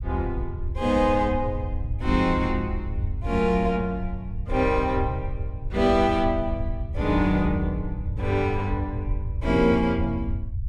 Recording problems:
rumble; below 90 Hz, SNR 6 dB

